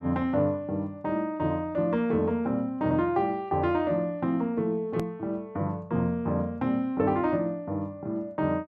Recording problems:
hard cut with a click; at 5 s

